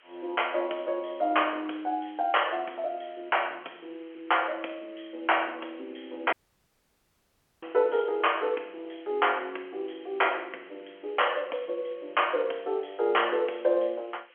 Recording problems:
phone line; 300 Hz to 3.3 kHz, G.711
hiss; SNR 27 dB
audio cutting out; at 6.5 s for 1.5 s

